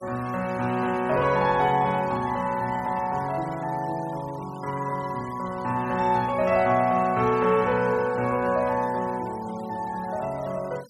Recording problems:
denoising artefacts; signal-to-artefact ratio 21 dB

